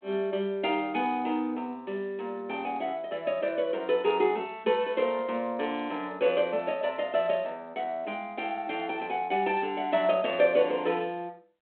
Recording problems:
phone line; 240 Hz to 3.3 kHz, G.726

